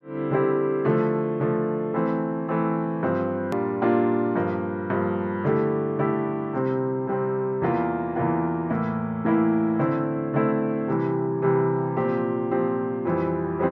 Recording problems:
treble cut off; nothing above 7 kHz
edit click; at 3.5 s

